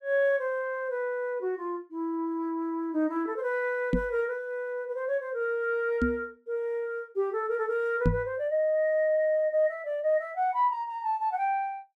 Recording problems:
knock on the microphone; at 4 s, at 6 s and at 8 s; peak +7 dB vs average level

